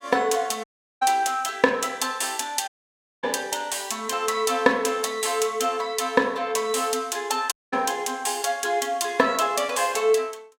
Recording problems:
dropout; at 0.5 s, at 2.5 s for 0.5 s and at 7.5 s

